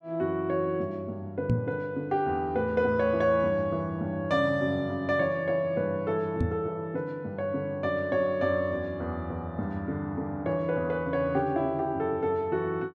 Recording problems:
microphone bump; at 1.5 s and at 6.5 s; peak +6 dB vs average level

